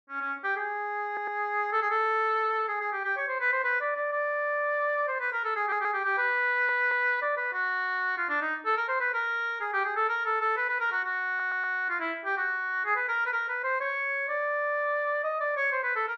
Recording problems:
audio stuttering; 4 times, first at 1 s

